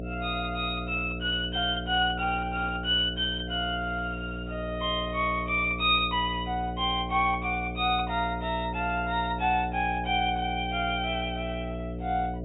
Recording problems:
treble missing; nothing above 4 kHz
hum; 60 Hz, harmonics up to 720 Hz, SNR 8 dB

